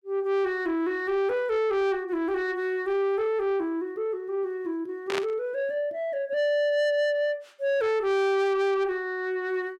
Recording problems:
distortion; soft clipping, signal-to-distortion ratio 11 dB
static burst; at 5 s; peak 0 dB vs average level

